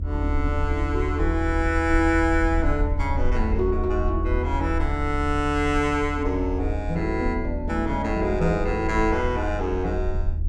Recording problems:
rumble; below 80 Hz, SNR 3 dB

